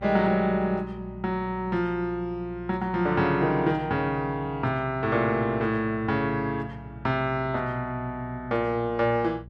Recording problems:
hum; 60 Hz, harmonics up to 420 Hz, SNR 18 dB

